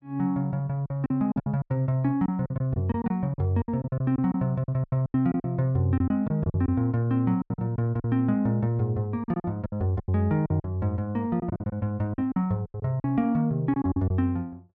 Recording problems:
lost packets; 14% of the sound replaced, filled with silence

